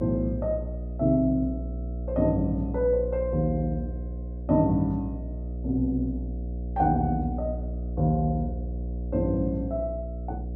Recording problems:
electrical hum; 60 Hz, harmonics up to 660 Hz, SNR 7 dB

